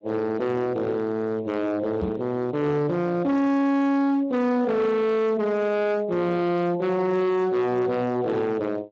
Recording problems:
lossy codec; Speex, log-spectral distance 2 dB, nothing above 7.3 kHz
distorted audio; hard clipping, uneven, signal-to-distortion ratio 6 dB
microphone bump; at 2 s; peak -2 dB vs average level

